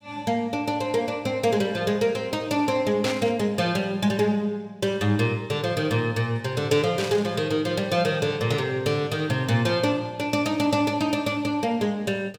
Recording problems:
burst of static; at 3 s and at 7 s; peak -3 dB vs average level

